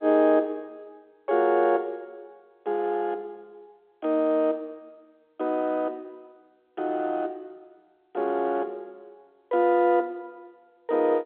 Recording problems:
telephone audio; 280 Hz to 3.9 kHz, G.711

